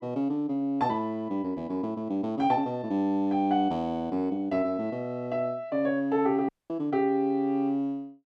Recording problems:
dropout; at 6.5 s

